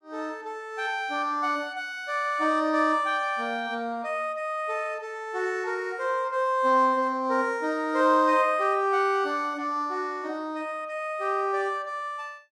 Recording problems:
none

